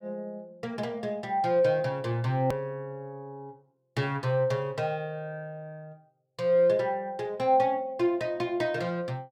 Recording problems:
edit click; at 2.5 s

